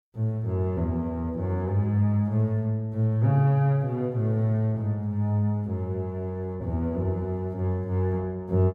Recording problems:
none

